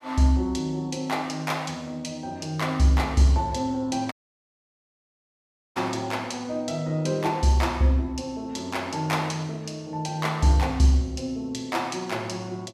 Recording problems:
audio cutting out; at 4 s for 1.5 s

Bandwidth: 15 kHz